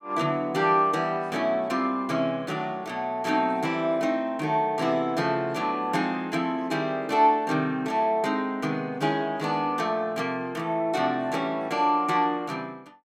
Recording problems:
none

